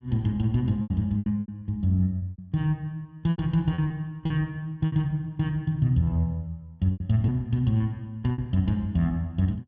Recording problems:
lost packets; 8% of the sound replaced, filled with repeated pitch periods

